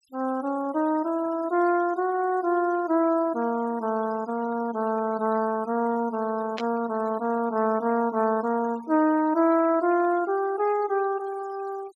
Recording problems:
noise reduction artefacts; signal-to-artefact ratio 23 dB
burst of static; at 6.5 s; peak -5 dB vs average level

